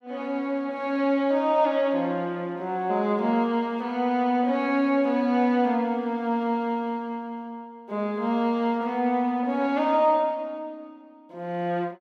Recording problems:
none

